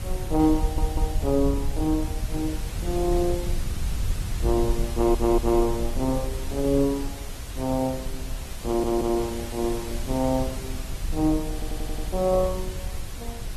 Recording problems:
codec artefacts; Opus, log-spectral distance 5 dB
hiss; slope -2 dB per octave, SNR 13 dB
low-frequency rumble; below 68 Hz, SNR 7 dB
audio stuttering; 4 times, first at 0.5 s

